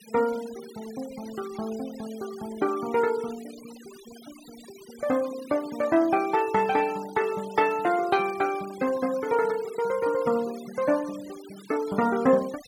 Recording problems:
denoising artefacts; signal-to-artefact ratio 19 dB

